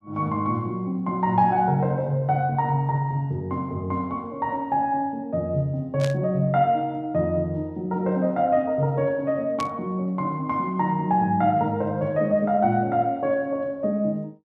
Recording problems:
static burst; at 6 s and at 9.5 s; peak -7 dB vs average level

